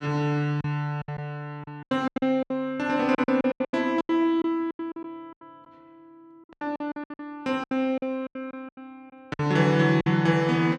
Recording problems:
packet loss; 17% of the sound replaced, filled with silence

